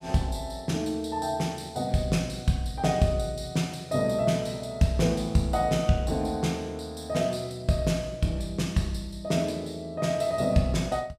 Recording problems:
none

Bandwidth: 15 kHz